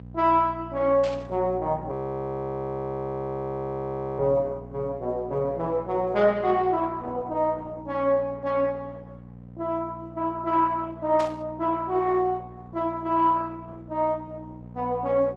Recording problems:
lossy codec; Opus, log-spectral distance 2 dB, nothing above 13.1 kHz
hum; 60 Hz, harmonics up to 780 Hz, SNR 16 dB
burst of static; at 1 s and at 11 s; peak -9 dB vs average level
frozen audio; at 2 s for 2.5 s

